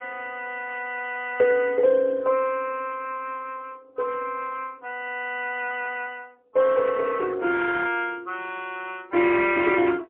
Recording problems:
telephone audio; 220 Hz to 3.3 kHz, AMR-NB, then MP3

